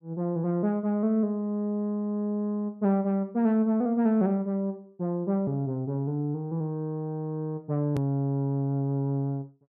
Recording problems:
hard cut with a click; at 8 s

